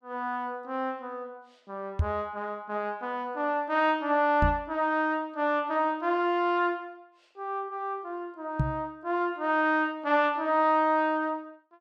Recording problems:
knock on the microphone; at 2 s, at 4.5 s and at 8.5 s; peak +5 dB vs average level

